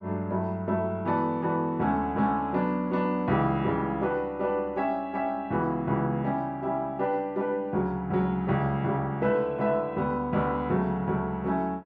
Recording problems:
none

